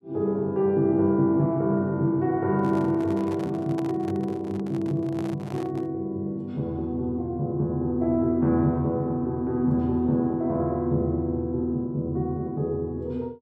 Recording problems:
handling noise; from 2.5 to 6 s; peak -8 dB vs average level

